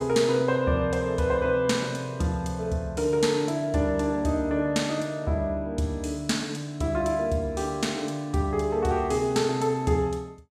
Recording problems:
none

